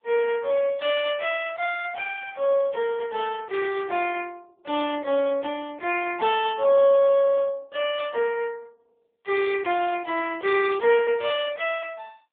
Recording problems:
telephone audio; 300 Hz to 3.1 kHz, AMR-NB

